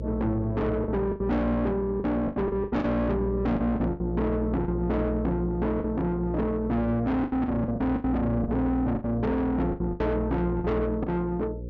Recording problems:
treble cut off; nothing above 8 kHz
distorted audio; soft clipping, signal-to-distortion ratio 6 dB
hum; 60 Hz, harmonics up to 540 Hz, SNR 7 dB
packet loss; 11% of the sound replaced, filled with the last packet

